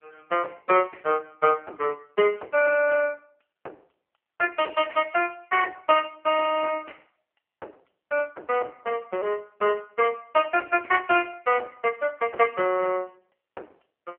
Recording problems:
telephone audio; 320 Hz to 3 kHz, AMR-NB

